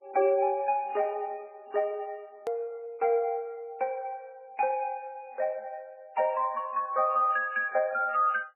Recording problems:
lossy codec; MP3, log-spectral distance 2 dB, nothing above 2.4 kHz
click at an edit; at 2.5 s

